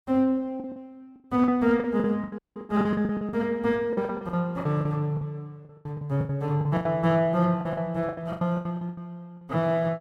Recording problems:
packet loss; 18% of the sound replaced, filled with the last packet
audio cutting out; at 2.5 s

